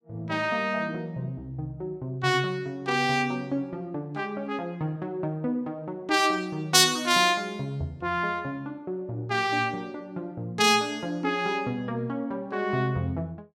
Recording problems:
none

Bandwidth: 16 kHz